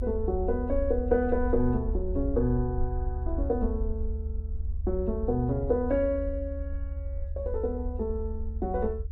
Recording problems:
low-frequency rumble; below 74 Hz, SNR 4 dB

